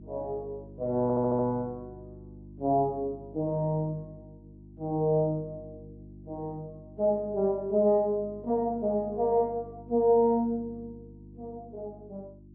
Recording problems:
hum; 50 Hz, harmonics up to 350 Hz, SNR 20 dB
stutter; at 1 s

